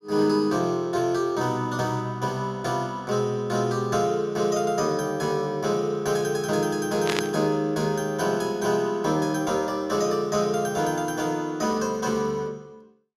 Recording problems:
burst of static; at 7 s; peak +2 dB vs average level

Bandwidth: 15 kHz